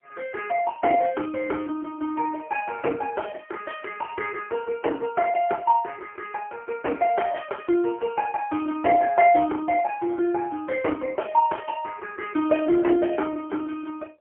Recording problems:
phone line; 260 Hz to 3.1 kHz, AMR-NB, then MP3

